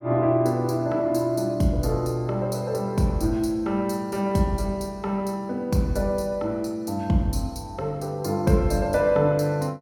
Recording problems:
none

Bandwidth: 17 kHz